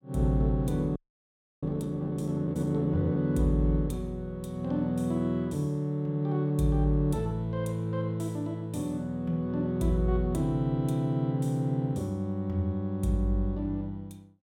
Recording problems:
audio freezing; at 1 s for 0.5 s

